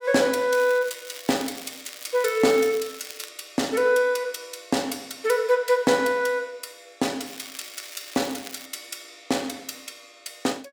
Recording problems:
crackling; from 0.5 to 3.5 s and from 7.5 to 8.5 s; loose cable, SNR 15 dB

